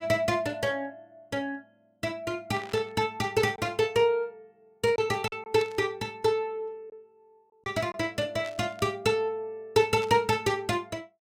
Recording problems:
packet loss; 1.7% of the sound replaced, filled with silence
burst of static; 4 times, first at 2.5 s; peak -10 dB vs average level

